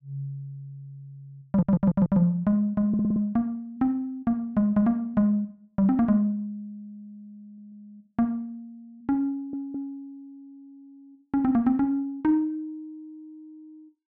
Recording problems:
stutter; 4 times, first at 1.5 s

